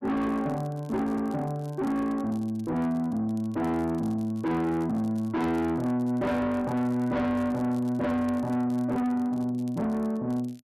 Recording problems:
distorted audio; soft clipping, signal-to-distortion ratio 7 dB
crackle; vinyl, SNR 29 dB

